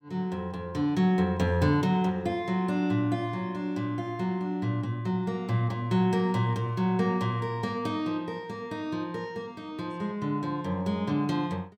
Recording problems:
none

